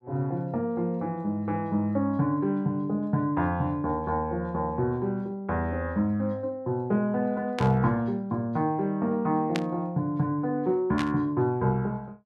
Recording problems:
static burst; at 7.5 s, at 9.5 s and at 11 s; peak 0 dB vs average level

